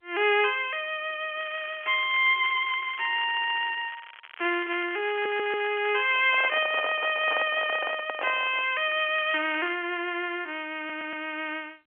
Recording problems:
phone line; 320 Hz to 3.3 kHz, G.711
crackle; from 1.5 to 6 s and at 9 s; loose cable, SNR 19 dB
audio stuttering; at 3 s, at 5 s and at 11 s
handling noise; from 6 to 8.5 s; peak -4 dB vs average level

